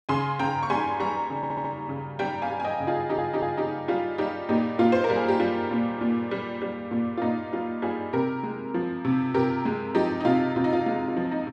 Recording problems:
stutter; at 1.5 s and at 3 s

